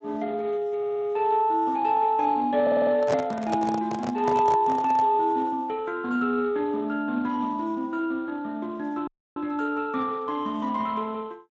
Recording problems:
lossy compression; Speex, log-spectral distance 3 dB
audio stuttering; at 1 s and at 2.5 s
microphone handling noise; from 3 to 5 s; peak +2 dB vs average level
audio cutting out; at 9 s

